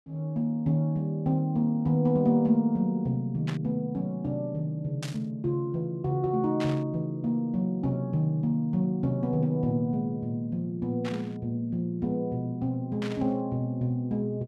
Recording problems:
static burst; 5 times, first at 3.5 s; peak -6 dB vs average level

